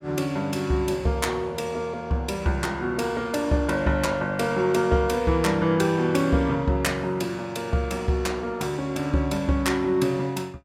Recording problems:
none

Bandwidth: 16 kHz